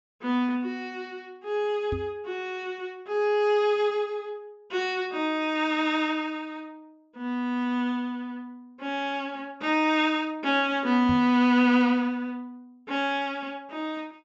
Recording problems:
treble cut off; nothing above 7.6 kHz
knock on the microphone; at 2 s and at 11 s; peak -3 dB vs average level

